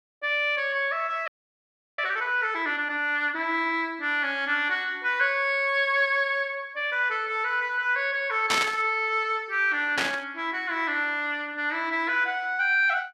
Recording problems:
frozen audio; at 1.5 s for 0.5 s
static burst; at 8.5 s and at 10 s; peak +4 dB vs average level

